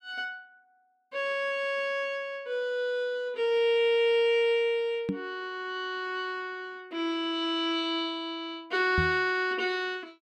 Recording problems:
microphone bump; at 5 s and at 9 s; peak +2 dB vs average level

